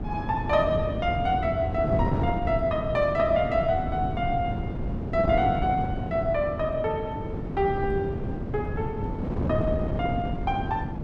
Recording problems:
wind on the microphone; below 290 Hz, SNR 4 dB

